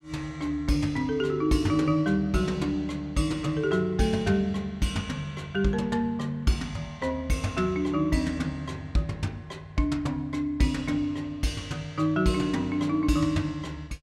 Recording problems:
none

